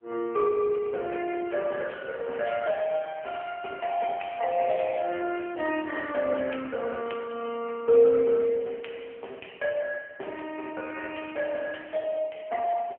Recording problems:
phone line; 280 Hz to 3.1 kHz, AMR-NB

